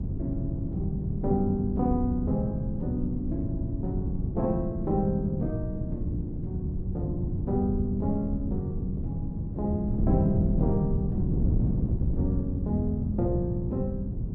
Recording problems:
wind noise; below 180 Hz, SNR 1 dB

